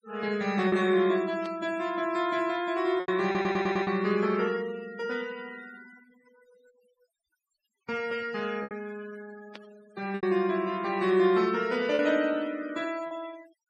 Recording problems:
noise reduction artefacts; signal-to-artefact ratio 20 dB
packet loss; 4% of the sound replaced, filled with repeated pitch periods
static burst; at 1.5 s and at 9.5 s; peak -13 dB vs average level
audio stuttering; at 3.5 s

